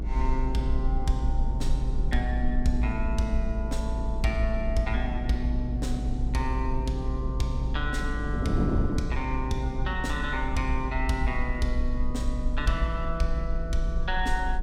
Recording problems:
rumble; below 54 Hz, strongest tone 26 Hz, SNR 1 dB
wind on the microphone; below 270 Hz, SNR 5 dB

